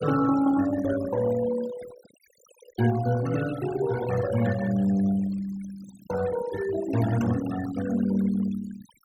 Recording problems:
noise reduction artefacts; signal-to-artefact ratio 14 dB

